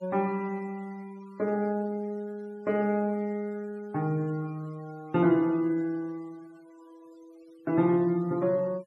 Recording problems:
noise reduction artefacts; signal-to-artefact ratio 27 dB

